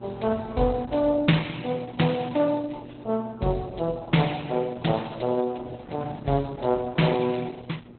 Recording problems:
codec artefacts; Opus, log-spectral distance 7 dB, nothing above 4 kHz
electrical hum; 60 Hz, harmonics up to 1.3 kHz, SNR 20 dB
wind noise; below 550 Hz, SNR 21 dB

